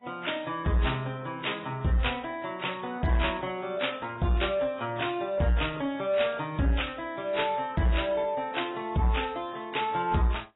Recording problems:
lossy compression; AAC, then AAC, log-spectral distance 6 dB, nothing above 3.8 kHz
distorted audio; soft clipping, signal-to-distortion ratio 12 dB

